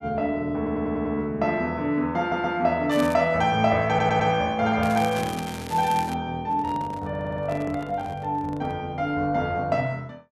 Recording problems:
audio stuttering; 4 times, first at 0.5 s
crackling; at 3 s and from 5 to 6 s; loose cable, SNR 15 dB
handling noise; from 6.5 to 9 s; peak -8 dB vs average level

